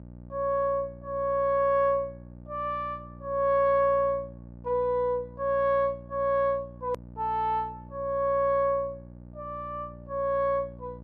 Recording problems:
electrical hum; 60 Hz, harmonics up to 900 Hz, SNR 18 dB
edit click; at 7 s

